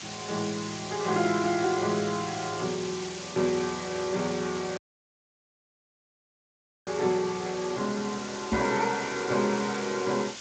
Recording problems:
lossy compression; Speex, log-spectral distance 18 dB
hiss; slope 0 dB per octave, SNR 10 dB
audio cutting out; at 5 s for 2 s
microphone thump; at 8.5 s; peak +3 dB vs average level

